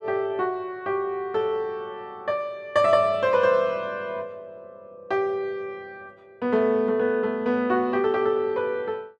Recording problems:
none

